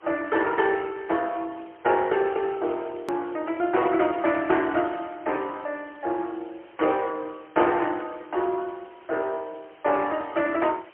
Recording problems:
telephone audio; 280 Hz to 3.3 kHz, AMR-NB, then MP3
hiss; SNR 27 dB
edit click; at 3 s

